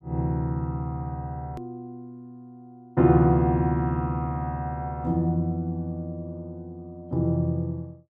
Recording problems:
click at an edit; at 1.5 s

